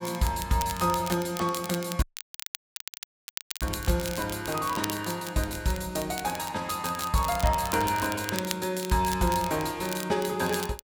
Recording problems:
crackle; vinyl, SNR 10 dB
audio cutting out; at 2 s for 1.5 s

